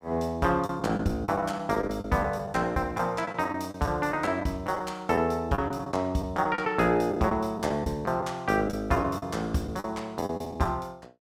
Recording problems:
lost packets; 9% of the sound replaced, filled with the last packet

